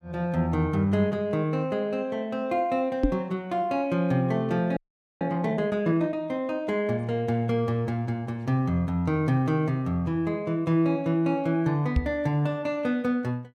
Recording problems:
microphone thump; at 3 s and at 12 s; peak +6 dB vs average level
frozen audio; at 5 s

